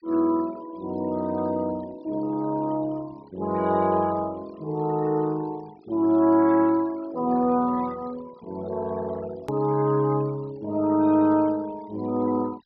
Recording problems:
treble cut off; nothing above 5.5 kHz
noise reduction artefacts; signal-to-artefact ratio 24 dB
hard cut with a click; at 9.5 s

